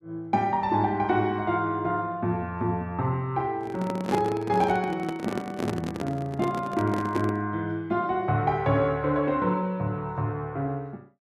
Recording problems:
microphone handling noise; from 3.5 to 7.5 s; peak +3 dB vs average level

